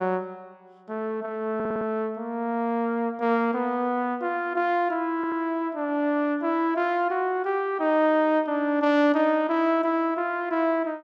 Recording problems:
audio stuttering; at 1.5 s and at 5 s

